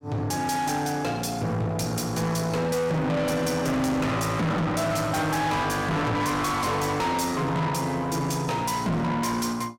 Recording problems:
distortion; soft clipping, signal-to-distortion ratio 7 dB

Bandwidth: 16.5 kHz